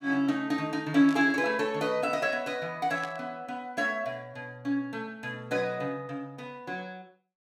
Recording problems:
burst of static; at 1 s and at 3 s; peak -9 dB vs average level

